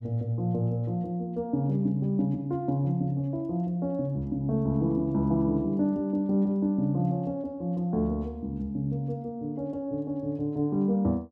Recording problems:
none

